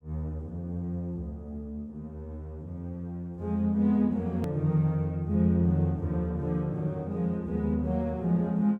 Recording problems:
edit click; at 4.5 s

